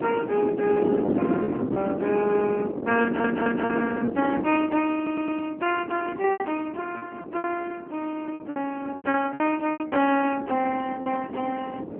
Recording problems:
telephone audio; 220 Hz to 3.1 kHz, AMR-NB
wind noise; below 450 Hz, SNR 4 dB
packet loss; 9% of the sound replaced, filled with repeated pitch periods
audio stuttering; at 3 s and at 5 s

